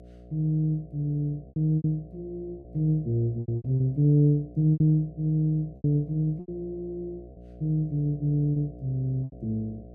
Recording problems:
mains hum; 60 Hz, harmonics up to 720 Hz, SNR 20 dB
lost packets; 8% of the sound replaced, filled with repeated pitch periods

